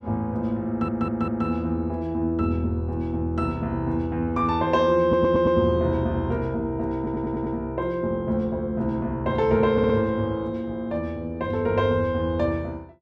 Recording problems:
audio stuttering; 4 times, first at 0.5 s

